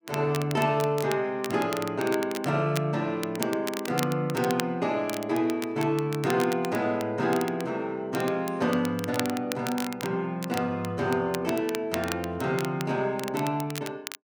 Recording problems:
crackling; vinyl, SNR 11 dB

